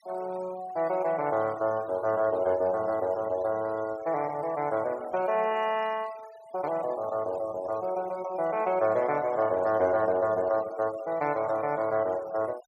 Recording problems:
denoising artefacts; signal-to-artefact ratio 21 dB

